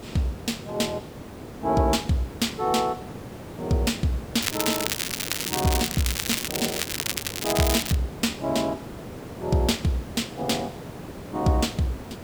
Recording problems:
background hiss; slope -7 dB per octave, SNR 12 dB
crackle; from 4.5 to 8 s; loose cable, SNR 1 dB

